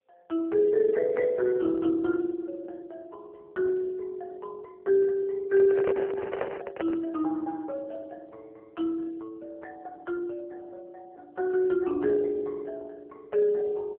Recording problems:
phone line; 240 Hz to 2.9 kHz, AMR-NB
handling noise; from 5.5 to 7 s; peak +1 dB vs average level

